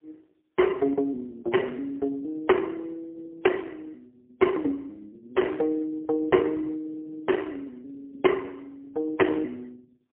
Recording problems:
phone line; 220 Hz to 3.2 kHz, AMR-NB, then MP3

